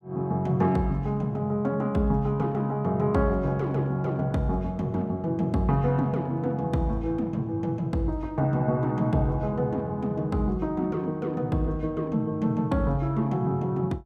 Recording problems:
none

